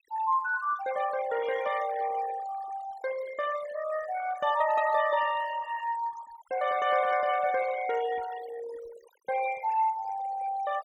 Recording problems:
noise reduction artefacts; signal-to-artefact ratio 13 dB

